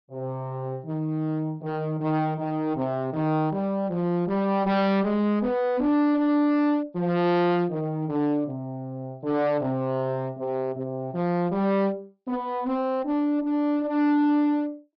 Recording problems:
low-pass filter; nothing above 5.5 kHz
distorted audio; hard clipping, uneven, signal-to-distortion ratio 6 dB

